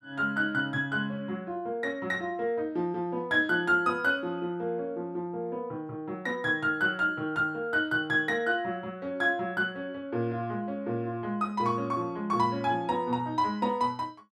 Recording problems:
none

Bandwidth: 13 kHz